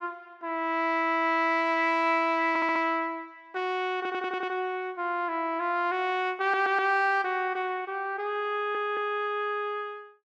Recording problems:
audio stuttering; 4 times, first at 2.5 s

